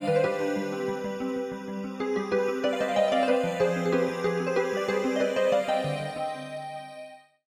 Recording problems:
none

